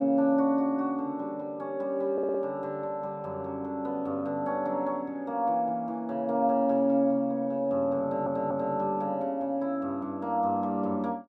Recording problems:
audio stuttering; at 2 s and at 8 s

